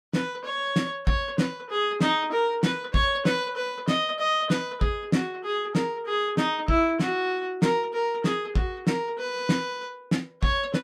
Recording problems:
none

